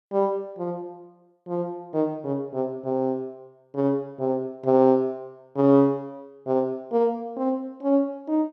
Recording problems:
none

